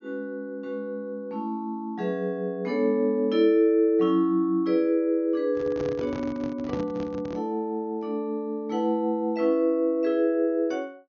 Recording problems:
treble cut off; nothing above 6.8 kHz
handling noise; from 5.5 to 7.5 s; peak -3 dB vs average level

